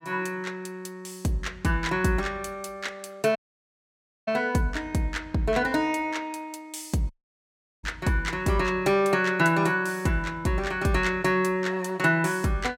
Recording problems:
dropout; at 3.5 s for 1 s and at 7 s for 0.5 s

